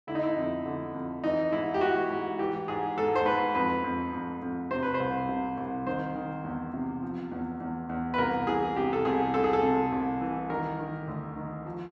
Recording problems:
none

